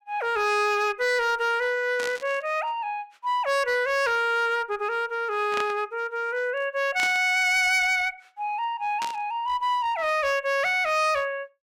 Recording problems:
distortion; hard clipping, uneven, signal-to-distortion ratio 10 dB
burst of static; 4 times, first at 2 s; peak -4 dB vs average level

